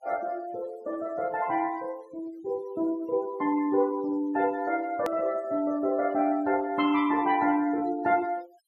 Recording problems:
denoising artefacts; signal-to-artefact ratio 23 dB
edit click; at 5 s

